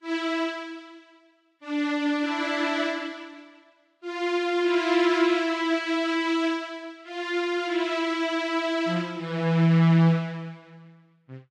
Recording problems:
codec artefacts; Vorbis, log-spectral distance 2 dB

